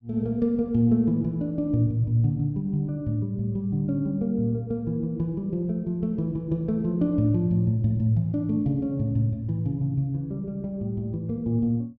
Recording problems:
none

